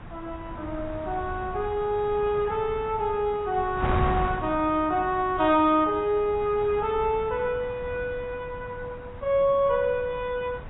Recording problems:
lossy codec; AAC, log-spectral distance 2 dB, nothing above 3.1 kHz
wind on the microphone; below 710 Hz, SNR 12 dB

